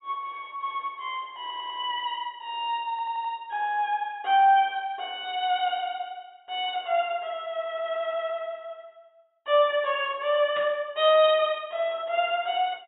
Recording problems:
treble missing; nothing above 4 kHz
audio stuttering; at 1.5 s and at 3 s
burst of static; at 11 s; peak -9 dB vs average level

